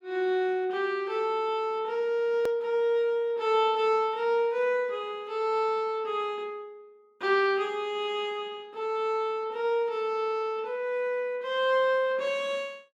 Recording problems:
edit click; at 2.5 s

